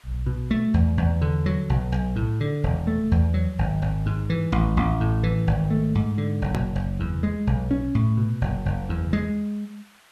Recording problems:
hiss; SNR 29 dB
edit click; at 6.5 s

